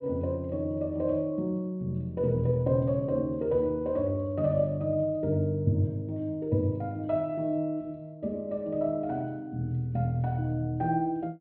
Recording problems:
treble cut off; nothing above 4.4 kHz

